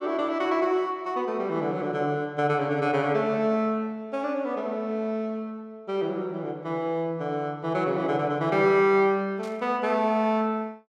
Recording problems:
burst of static; at 9.5 s; peak -16 dB vs average level

